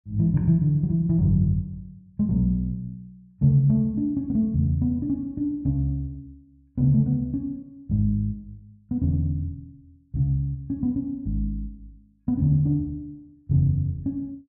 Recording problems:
none

